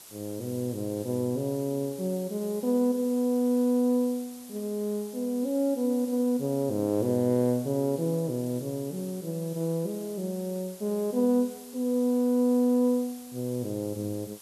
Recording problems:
hiss; SNR 18 dB

